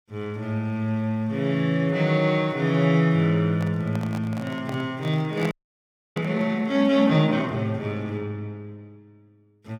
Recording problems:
handling noise; from 3.5 to 6.5 s; peak -5 dB vs average level
frozen audio; at 5.5 s for 0.5 s

